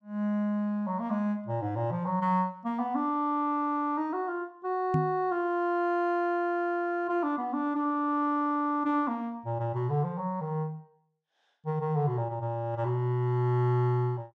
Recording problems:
knock on the microphone; at 5 s; peak +5 dB vs average level

